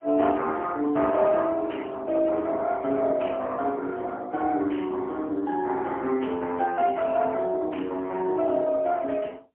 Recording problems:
telephone audio; 220 Hz to 3.2 kHz, AMR-NB, then MP3

